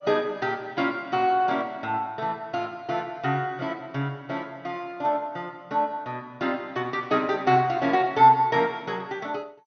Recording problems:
codec artefacts; MP2, log-spectral distance 2 dB, nothing above 6.3 kHz

